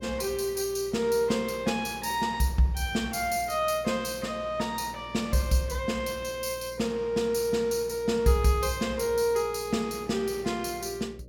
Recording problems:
hum; 60 Hz, harmonics up to 600 Hz, SNR 21 dB

